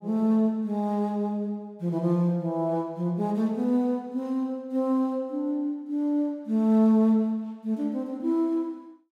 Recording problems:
none

